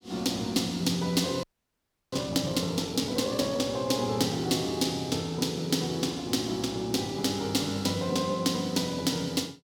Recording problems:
frozen audio; at 1.5 s for 0.5 s

